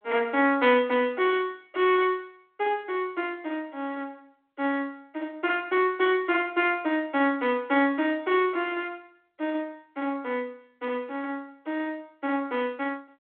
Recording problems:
telephone audio; 260 Hz to 3.4 kHz, G.726

